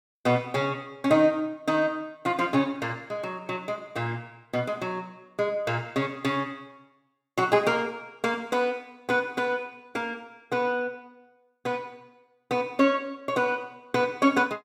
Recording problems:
none

